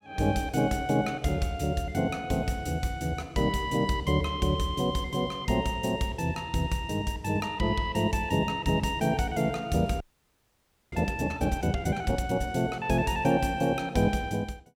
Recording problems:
frozen audio; at 10 s for 1 s

